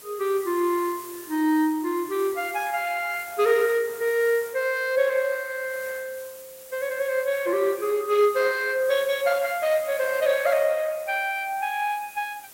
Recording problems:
codec artefacts; Opus, log-spectral distance 3 dB
background hiss; slope -1 dB per octave, SNR 17 dB

